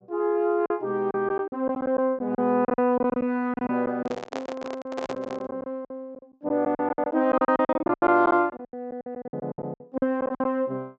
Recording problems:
treble cut off; nothing above 8 kHz
packet loss; 17% of the sound replaced, filled with silence
handling noise; from 4 to 5.5 s; peak -4 dB vs average level

